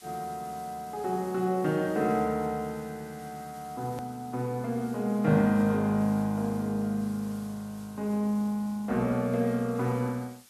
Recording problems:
background hiss; slope +1 dB per octave, SNR 23 dB
hard cut with a click; at 4 s

